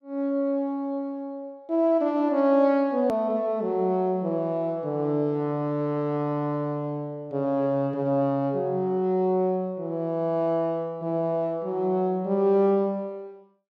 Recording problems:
edit click; at 3 s

